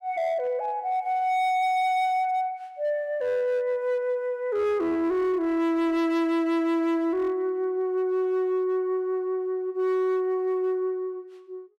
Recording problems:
distortion; hard clipping, signal-to-distortion ratio 11 dB

